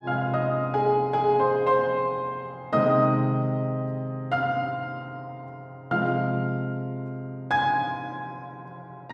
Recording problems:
none

